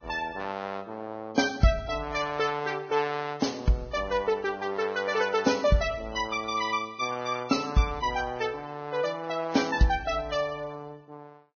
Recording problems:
lossy codec; Vorbis, log-spectral distance 3 dB, nothing above 6.5 kHz

